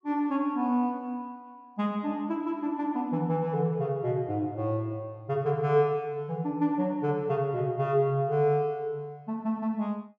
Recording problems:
none

